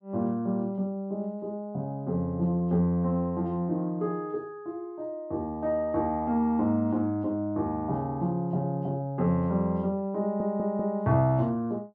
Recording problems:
stutter; at 10 s

